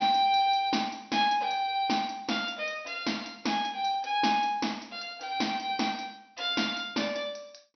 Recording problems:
treble missing; nothing above 6.1 kHz

